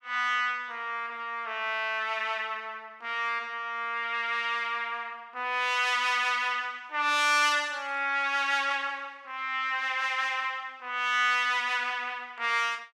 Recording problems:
none

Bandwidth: 15.5 kHz